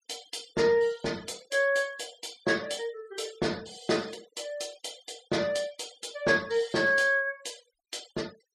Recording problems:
denoising artefacts; signal-to-artefact ratio 21 dB

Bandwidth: 14.5 kHz